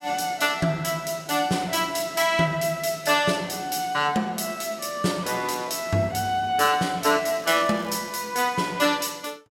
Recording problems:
crackle; at 7.5 s; loose cable, SNR 24 dB

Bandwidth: 16 kHz